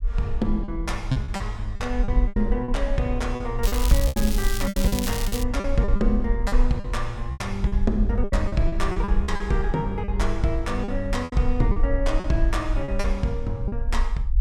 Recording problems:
low-frequency rumble; below 48 Hz, SNR 2 dB
lost packets; 12% of the sound replaced, filled with repeated pitch periods
crackling; from 3.5 to 5.5 s; loose cable, SNR 5 dB

